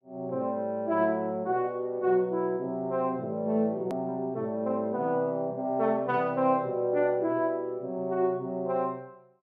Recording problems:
edit click; at 4 s

